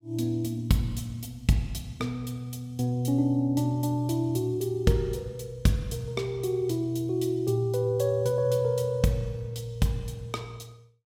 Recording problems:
none

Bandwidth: 16 kHz